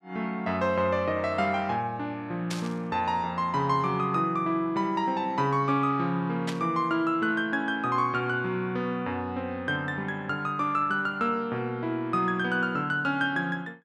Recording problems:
static burst; at 2.5 s and at 6.5 s; peak -3 dB vs average level

